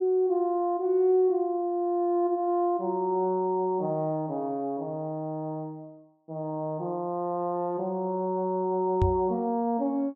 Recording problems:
knock on the microphone; at 9 s; peak +5 dB vs average level

